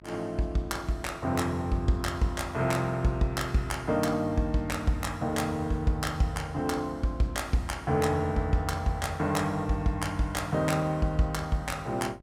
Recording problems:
hum; 50 Hz, harmonics up to 1 kHz, SNR 21 dB

